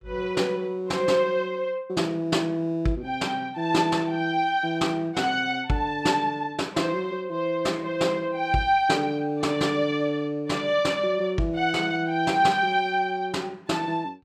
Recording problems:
none

